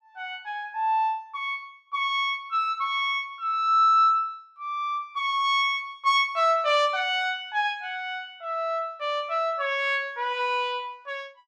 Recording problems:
none

